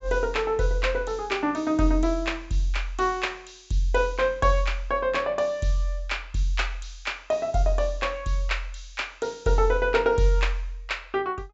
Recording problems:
low-pass filter; nothing above 7.4 kHz

